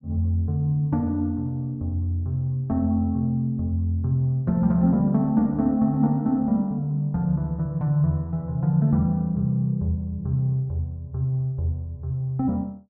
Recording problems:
none

